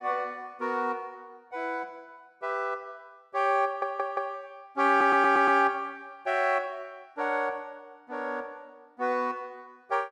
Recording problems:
audio stuttering; at 3.5 s and at 5 s

